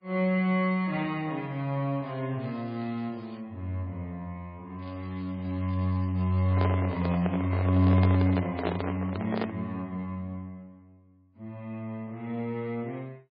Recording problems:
lossy codec; MP3, log-spectral distance 2 dB, nothing above 11.3 kHz
crackling; from 2 to 3.5 s and from 5 to 7 s; loose cable, SNR 27 dB
handling noise; from 6.5 to 9.5 s; peak +3 dB vs average level

